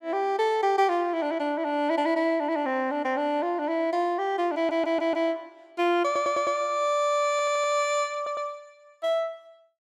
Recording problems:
stutter; 4 times, first at 4.5 s

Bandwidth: 14.5 kHz